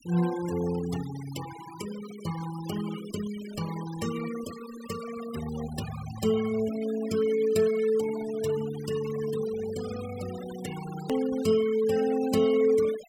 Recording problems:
noise reduction artefacts; signal-to-artefact ratio 14 dB
click at an edit; at 11 s

